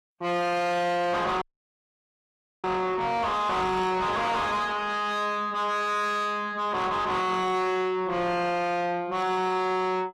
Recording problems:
codec artefacts; AAC, log-spectral distance 2 dB, nothing above 13.1 kHz
distorted audio; soft clipping, signal-to-distortion ratio 5 dB
dropout; at 1.5 s for 1 s

